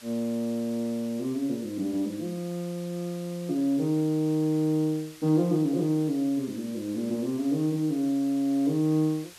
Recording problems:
background hiss; slope +1 dB per octave, SNR 20 dB

